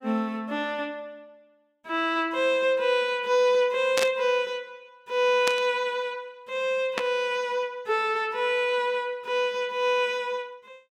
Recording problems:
static burst; at 4 s, at 5.5 s and at 7 s; peak +3 dB vs average level

